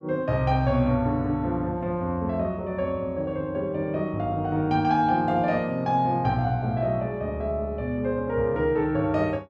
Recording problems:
none

